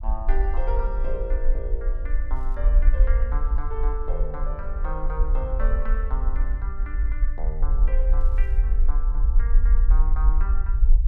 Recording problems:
low-frequency rumble; below 46 Hz, strongest tone 24 Hz, SNR -11 dB
crackle; at 2.5 s and at 8 s; loose cable, SNR 30 dB

